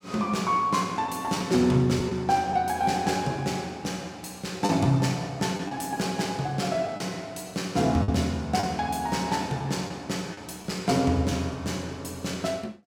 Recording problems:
lost packets; 3% of the sound replaced, filled with the last packet

